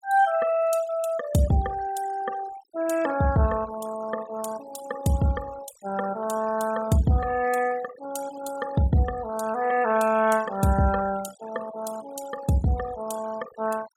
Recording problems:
noise reduction artefacts; signal-to-artefact ratio 15 dB

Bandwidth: 16.5 kHz